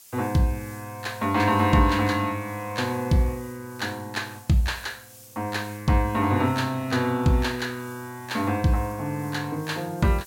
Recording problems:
background hiss; SNR 22 dB

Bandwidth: 16.5 kHz